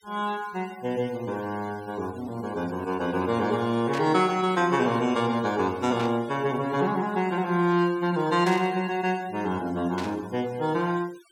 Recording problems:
noise reduction artefacts; signal-to-artefact ratio 22 dB
burst of static; 4 times, first at 4 s; peak -6 dB vs average level

